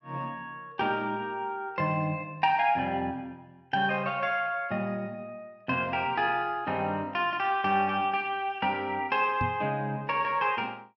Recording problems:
microphone thump; at 9.5 s; peak -1 dB vs average level

